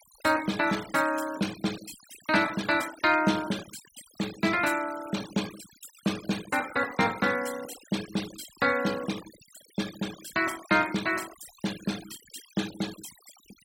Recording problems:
noise reduction artefacts; signal-to-artefact ratio 14 dB

